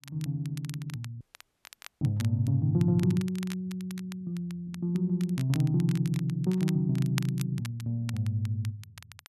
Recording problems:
crackle; vinyl, SNR 18 dB
audio cutting out; at 1 s for 1 s

